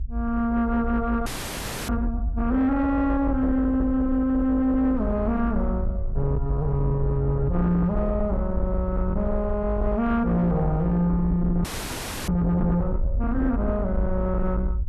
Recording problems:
distortion; soft clipping, signal-to-distortion ratio 12 dB
rumble; below 68 Hz, SNR 5 dB
frozen audio; at 1.5 s for 0.5 s and at 12 s for 0.5 s

